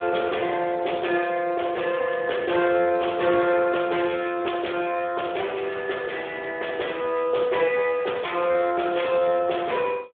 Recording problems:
phone line; 320 Hz to 3.5 kHz, Speex

